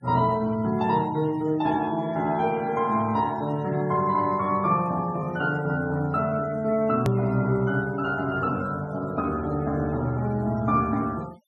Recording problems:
denoising artefacts; signal-to-artefact ratio 23 dB
edit click; at 7 s

